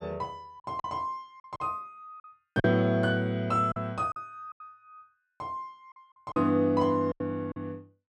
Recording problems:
packet loss; 9% of the sound replaced, filled with silence

